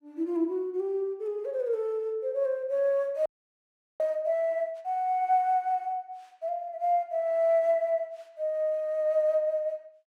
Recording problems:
frozen audio; at 3.5 s for 0.5 s

